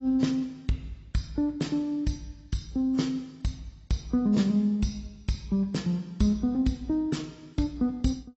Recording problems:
lossy codec; AAC, log-spectral distance 2 dB, nothing above 7.8 kHz

